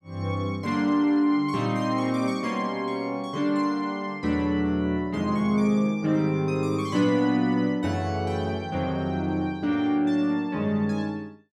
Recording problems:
none

